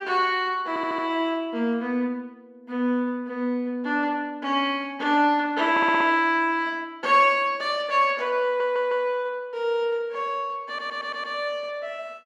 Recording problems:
audio stuttering; 4 times, first at 0.5 s

